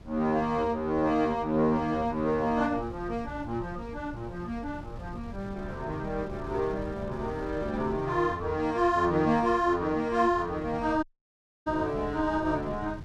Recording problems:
wind on the microphone; below 180 Hz, SNR 15 dB
audio cutting out; at 11 s for 0.5 s

